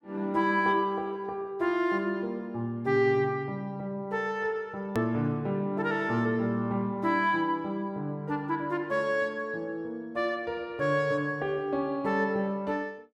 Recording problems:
edit click; at 5 s

